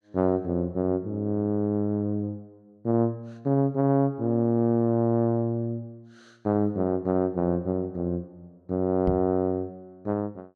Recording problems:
microphone bump; at 9 s; peak +1 dB vs average level

